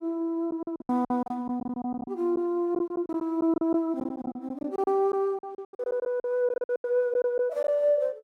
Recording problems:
packet loss; 16% of the sound replaced, filled with silence

